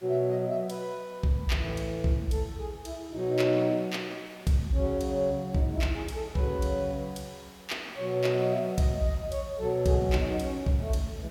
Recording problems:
background hiss; SNR 25 dB

